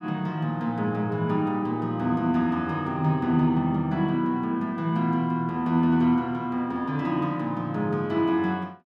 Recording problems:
none

